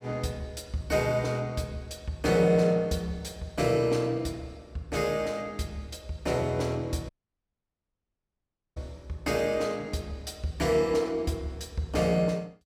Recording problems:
audio cutting out; at 7 s for 1.5 s

